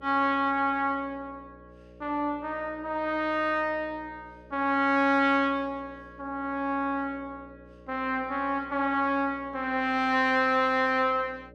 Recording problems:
electrical hum; 60 Hz, harmonics up to 600 Hz, SNR 24 dB

